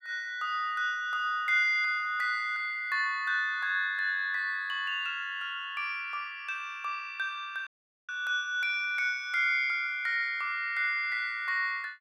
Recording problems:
dropout; at 7.5 s

